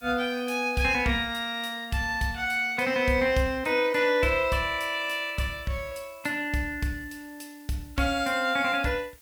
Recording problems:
background hiss; slope +1 dB per octave, SNR 27 dB

